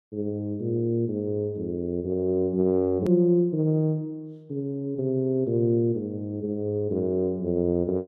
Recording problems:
edit click; at 3 s

